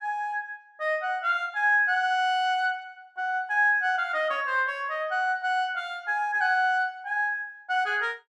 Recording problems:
none

